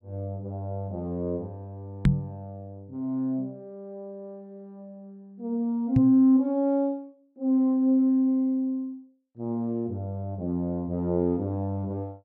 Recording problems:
microphone bump; at 2 s and at 6 s; peak +9 dB vs average level

